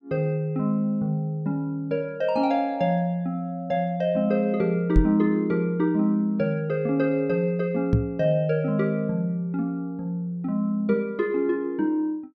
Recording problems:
knock on the microphone; at 5 s and at 8 s; peak +7 dB vs average level

